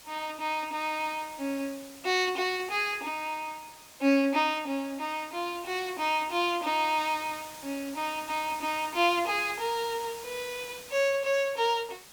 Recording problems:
background hiss; slope -1 dB per octave, SNR 16 dB

